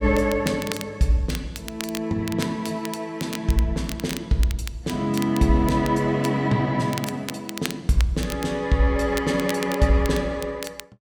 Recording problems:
crackling; vinyl, SNR 13 dB

